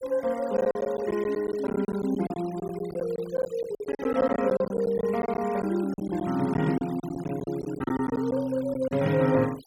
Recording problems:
noise reduction artefacts; signal-to-artefact ratio 18 dB
packet loss; 13% of the sound replaced, filled with silence

